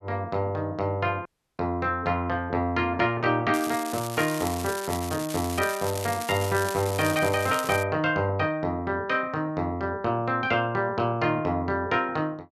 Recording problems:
dropout; at 1.5 s
crackling; from 3.5 to 8 s; loose cable, SNR 10 dB

